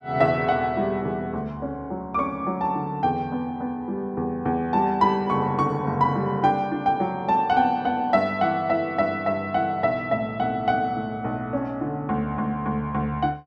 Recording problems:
none

